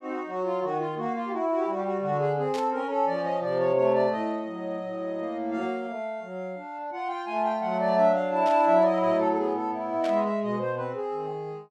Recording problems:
static burst; at 2.5 s, at 8.5 s and at 10 s; peak -8 dB vs average level

